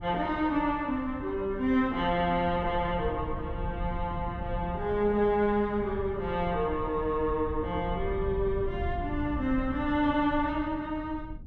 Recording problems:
low-frequency rumble; below 110 Hz, SNR 10 dB

